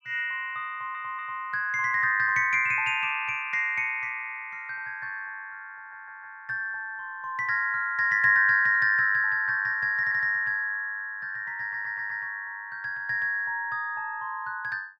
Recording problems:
stutter; 4 times, first at 0.5 s

